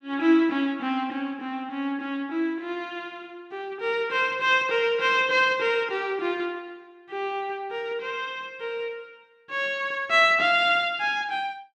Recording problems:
none

